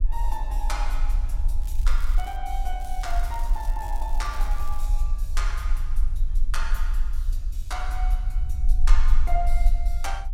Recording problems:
rumble; below 38 Hz, strongest tone 20 Hz, SNR -8 dB
crackling; at 1.5 s and from 3 to 5 s; loose cable, SNR 15 dB

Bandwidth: 16 kHz